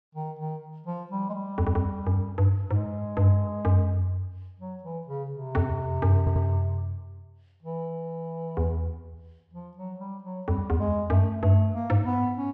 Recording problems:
audio stuttering; at 1.5 s and at 6 s

